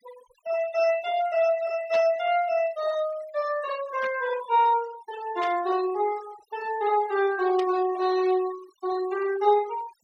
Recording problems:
noise reduction artefacts; signal-to-artefact ratio 18 dB
burst of static; 4 times, first at 2 s; peak -9 dB vs average level

